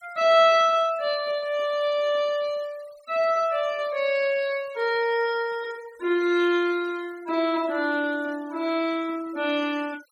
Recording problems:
denoising artefacts; signal-to-artefact ratio 24 dB

